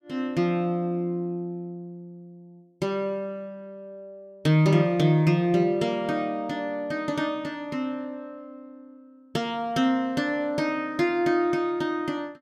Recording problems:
none

